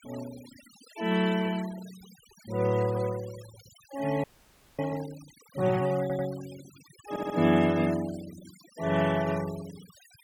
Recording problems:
denoising artefacts; signal-to-artefact ratio 18 dB
frozen audio; at 4 s for 0.5 s
audio stuttering; at 6 s and at 7 s

